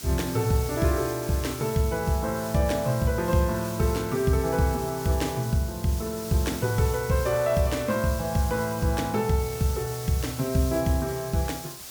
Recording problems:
hiss; SNR 12 dB

